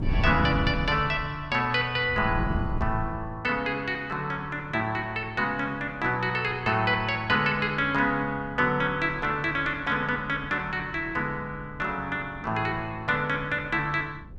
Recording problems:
wind on the microphone; below 140 Hz, SNR 11 dB

